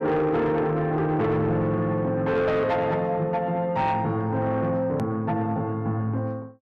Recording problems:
distortion; soft clipping, signal-to-distortion ratio 11 dB
click at an edit; at 5 s

